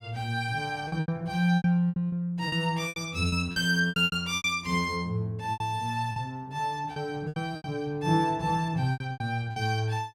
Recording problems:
lost packets; 13% of the sound replaced, filled with repeated pitch periods

